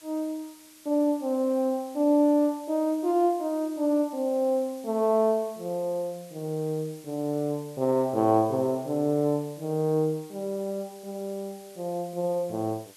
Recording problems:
hiss; slope +1 dB per octave, SNR 23 dB

